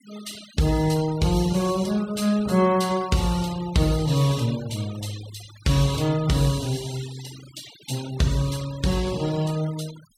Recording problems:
noise reduction artefacts; signal-to-artefact ratio 18 dB

